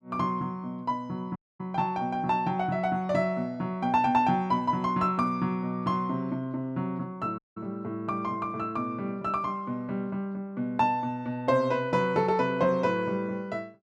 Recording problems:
audio cutting out; at 1.5 s and at 7.5 s

